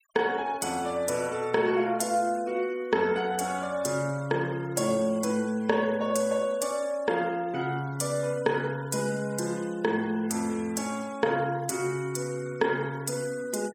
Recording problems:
noise reduction artefacts; signal-to-artefact ratio 23 dB

